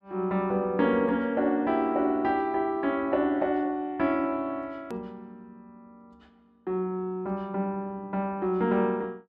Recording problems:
click at an edit; at 5 s

